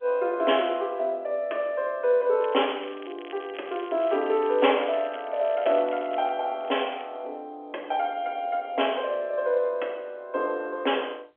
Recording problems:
phone line; 320 Hz to 3.3 kHz, G.711
crackling; from 2.5 to 6.5 s and at 6.5 s; loose cable, SNR 21 dB

